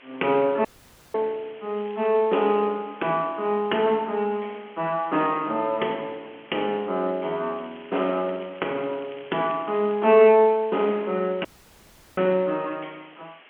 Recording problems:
phone line; 240 Hz to 3.3 kHz, G.711
background hiss; SNR 25 dB
dropout; at 0.5 s and at 11 s for 0.5 s
crackle; at 2 s and from 7.5 to 10 s; loose cable, SNR 27 dB

